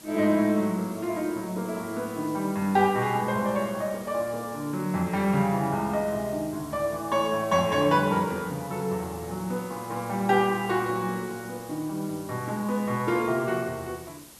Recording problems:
hiss; slope -2 dB per octave, SNR 19 dB

